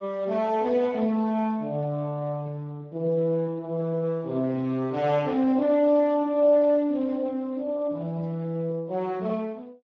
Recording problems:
lossy codec; Speex, log-spectral distance 2 dB

